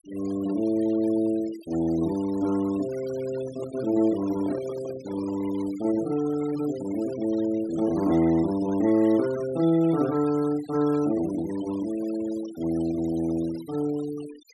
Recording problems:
noise reduction artefacts; signal-to-artefact ratio 19 dB
microphone handling noise; from 3.5 to 5.5 s; peak -9 dB vs average level

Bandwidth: 12.5 kHz